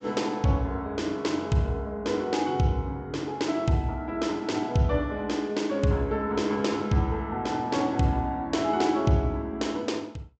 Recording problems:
treble missing; nothing above 8 kHz

